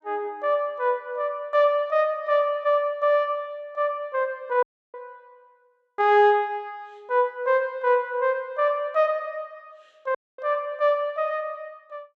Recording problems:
dropout; at 4.5 s and at 10 s

